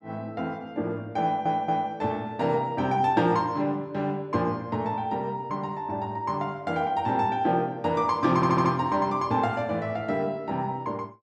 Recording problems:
stutter; at 1 s and at 8.5 s

